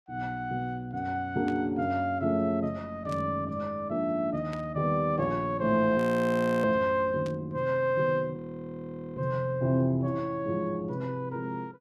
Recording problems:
burst of static; 4 times, first at 1.5 s; peak -11 dB vs average level
audio freezing; at 6 s for 0.5 s and at 8.5 s for 1 s

